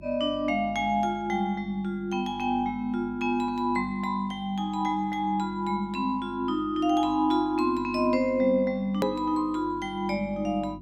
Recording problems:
hum; 50 Hz, harmonics up to 350 Hz, SNR 20 dB
hard cut with a click; at 9 s

